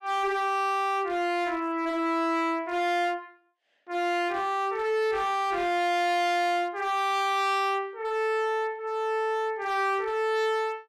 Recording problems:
distortion; hard clipping, signal-to-distortion ratio 7 dB

